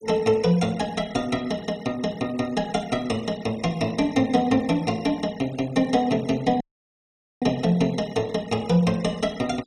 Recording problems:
noise reduction artefacts; signal-to-artefact ratio 23 dB
audio cutting out; at 6.5 s for 1 s

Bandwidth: 14.5 kHz